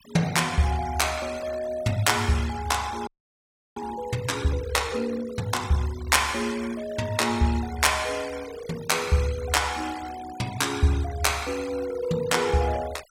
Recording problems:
denoising artefacts; signal-to-artefact ratio 17 dB
audio freezing; at 3 s for 0.5 s

